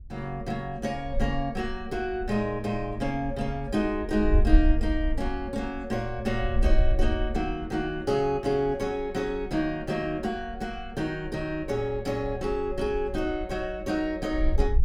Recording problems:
wind noise; below 50 Hz, SNR 4 dB

